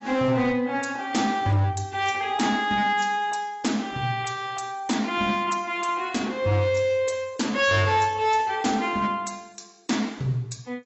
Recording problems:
lossy codec; AAC, log-spectral distance 4 dB, nothing above 7.8 kHz
distortion; hard clipping, signal-to-distortion ratio 11 dB

